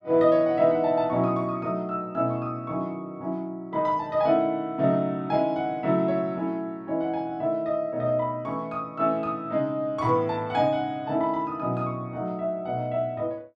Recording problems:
none

